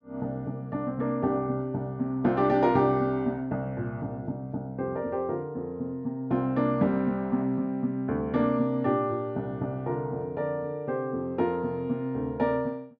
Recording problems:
none

